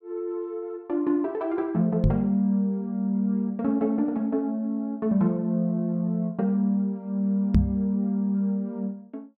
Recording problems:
microphone bump; at 2 s and at 7.5 s; peak +8 dB vs average level

